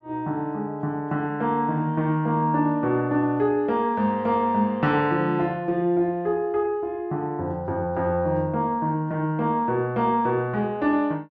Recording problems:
none

